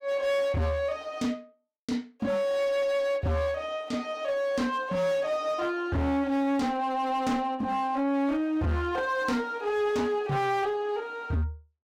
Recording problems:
distortion; hard clipping, signal-to-distortion ratio 10 dB

